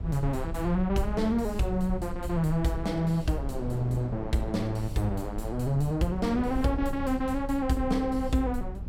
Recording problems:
rumble; below 74 Hz, SNR 10 dB
wind on the microphone; below 430 Hz, SNR 17 dB

